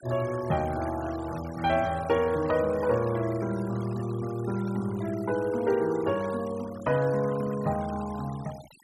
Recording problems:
denoising artefacts; signal-to-artefact ratio 18 dB

